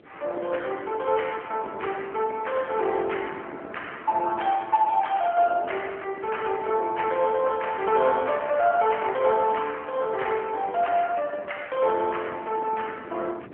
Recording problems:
phone line; 300 Hz to 3.2 kHz, AMR-NB
wind noise; below 500 Hz, SNR 21 dB

